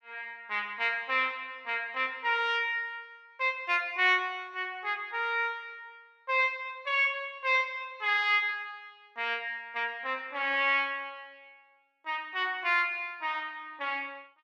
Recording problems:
none

